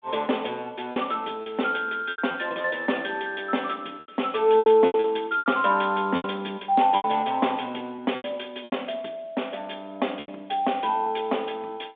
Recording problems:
phone line; 220 Hz to 3.6 kHz, G.726
packet loss; 8% of the sound replaced, filled with repeated pitch periods

